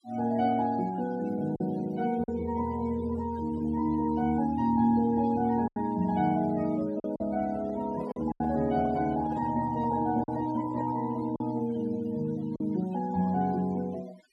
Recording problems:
denoising artefacts; signal-to-artefact ratio 20 dB
packet loss; 3% of the sound replaced, filled with silence
microphone handling noise; from 7.5 to 11 s; peak -9 dB vs average level

